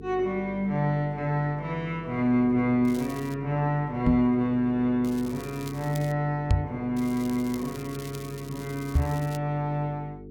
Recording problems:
hum; 50 Hz, harmonics up to 450 Hz, SNR 15 dB
crackling; at 3 s, from 5 to 6 s and from 7 to 9.5 s; loose cable, SNR 19 dB
microphone bump; at 4 s, at 6.5 s and at 9 s; peak +8 dB vs average level

